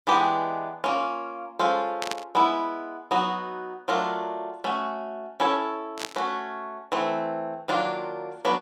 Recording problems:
static burst; at 2 s and at 6 s; peak +1 dB vs average level

